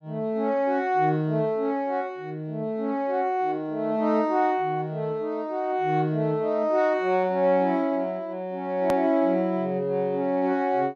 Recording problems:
hard cut with a click; at 9 s

